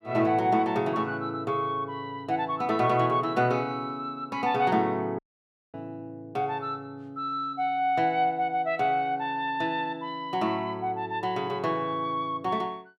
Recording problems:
dropout; at 5 s for 0.5 s

